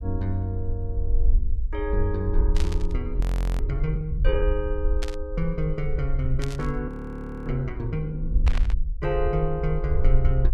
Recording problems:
low-frequency rumble; below 54 Hz, SNR -1 dB
burst of static; 4 times, first at 2.5 s; peak -1 dB vs average level
audio freezing; at 3 s and at 7 s for 0.5 s

